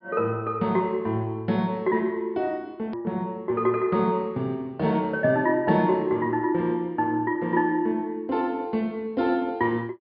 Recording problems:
low-pass filter; nothing above 5.5 kHz
hard cut with a click; at 3 s

